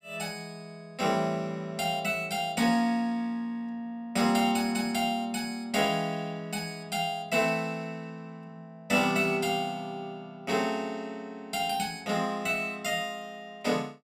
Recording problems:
none

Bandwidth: 15.5 kHz